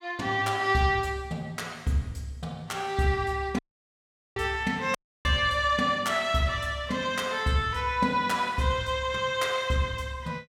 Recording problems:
audio cutting out; at 3.5 s for 1 s and at 5 s

